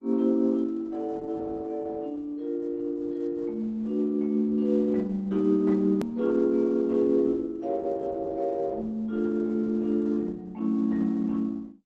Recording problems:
lossy codec; Opus, log-spectral distance 2 dB, nothing above 13.1 kHz
hard cut with a click; at 6 s

